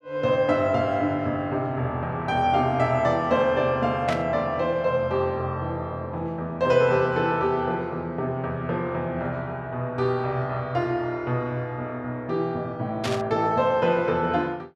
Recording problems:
burst of static; at 4 s and at 13 s; peak -2 dB vs average level

